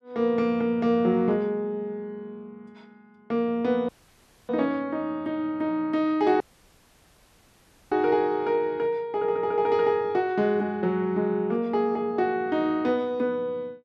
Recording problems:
audio cutting out; at 4 s for 0.5 s and at 6.5 s for 1.5 s

